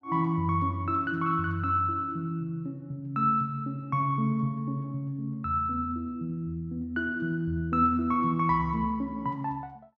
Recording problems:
none

